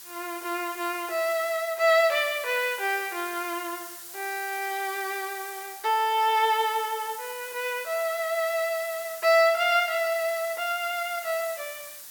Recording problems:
background hiss; SNR 13 dB

